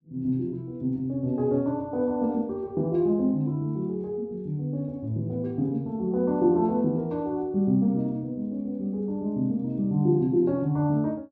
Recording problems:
none

